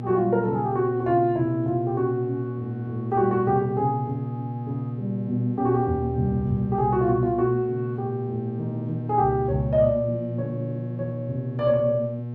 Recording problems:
electrical hum; 60 Hz, harmonics up to 600 Hz, SNR 7 dB

